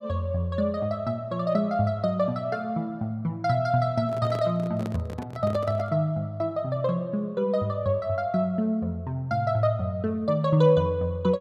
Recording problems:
microphone handling noise; from 4 to 6 s; peak -6 dB vs average level

